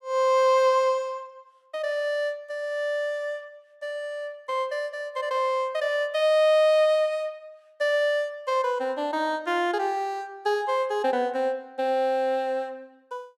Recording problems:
none

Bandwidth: 15.5 kHz